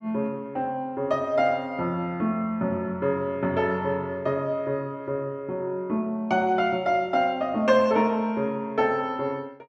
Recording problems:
none

